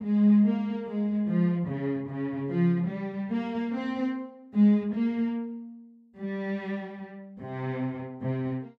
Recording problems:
none

